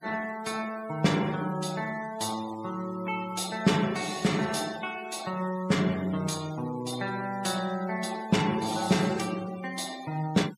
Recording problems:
denoising artefacts; signal-to-artefact ratio 16 dB

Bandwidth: 15 kHz